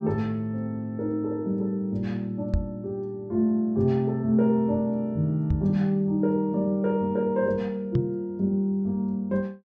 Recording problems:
treble missing; nothing above 7.9 kHz
microphone bump; at 2.5 s, at 5.5 s and at 8 s; peak +5 dB vs average level

